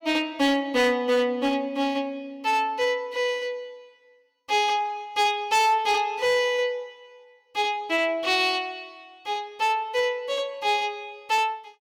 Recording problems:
distorted audio; hard clipping, signal-to-distortion ratio 11 dB

